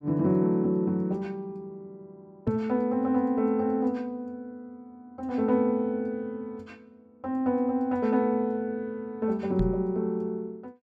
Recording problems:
microphone thump; at 2.5 s and at 9.5 s; peak +1 dB vs average level

